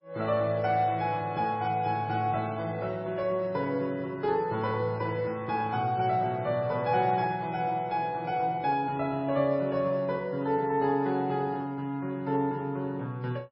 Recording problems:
codec artefacts; MP3, log-spectral distance 2 dB, nothing above 4.6 kHz

